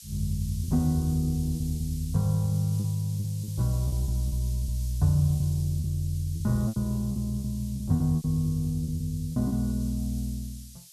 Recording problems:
background hiss; SNR 18 dB
lost packets; 9% of the sound replaced, filled with repeated pitch periods

